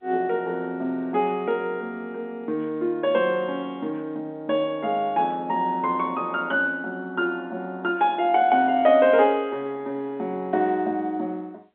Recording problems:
telephone audio; 220 Hz to 3.7 kHz, G.711

